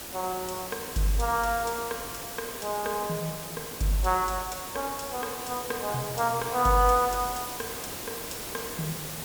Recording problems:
hiss; slope -3 dB per octave, SNR 7 dB

